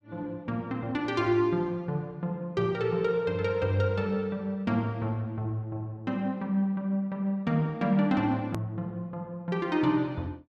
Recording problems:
hard cut with a click; at 8.5 s

